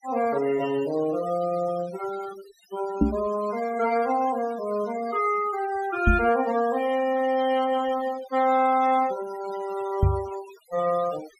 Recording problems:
denoising artefacts; signal-to-artefact ratio 17 dB
microphone thump; at 3 s, at 6 s and at 10 s; peak +8 dB vs average level

